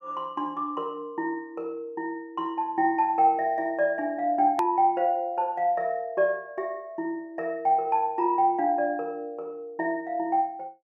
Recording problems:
edit click; at 4.5 s

